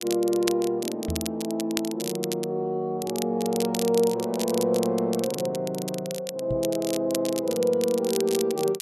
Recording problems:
crackling; vinyl, SNR 9 dB
microphone bump; at 1 s and at 6.5 s; peak -1 dB vs average level

